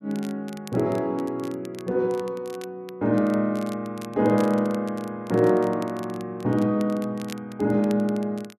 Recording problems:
crackling; vinyl, SNR 23 dB

